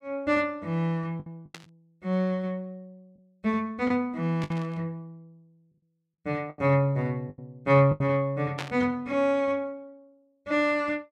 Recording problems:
lost packets; 5% of the sound replaced, filled with the last packet
burst of static; at 1.5 s, at 4.5 s and at 8.5 s; peak -3 dB vs average level

